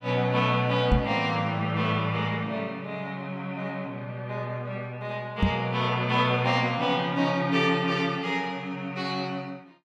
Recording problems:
microphone thump; at 1 s and at 5.5 s; peak +7 dB vs average level

